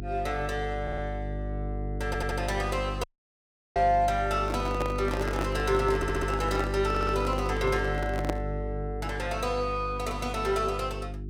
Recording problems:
hum; 50 Hz, harmonics up to 400 Hz, SNR 5 dB
audio stuttering; 4 times, first at 1 s
dropout; at 3 s for 0.5 s
microphone handling noise; from 4.5 to 8.5 s; peak +2 dB vs average level

